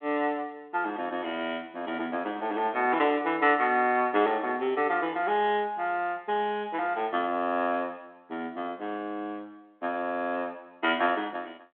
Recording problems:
phone line; 220 Hz to 3.5 kHz, G.726

